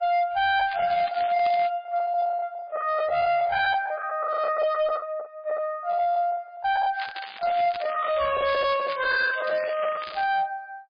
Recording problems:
lossy codec; MP3, log-spectral distance 3 dB, nothing above 5 kHz
distortion; hard clipping, signal-to-distortion ratio 11 dB
lost packets; 10% of the sound replaced, filled with the last packet
crackling; at 0.5 s and from 7 to 10 s; loose cable, SNR 15 dB

